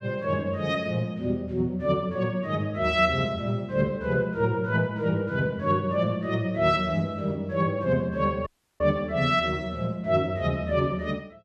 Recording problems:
audio cutting out; at 8.5 s

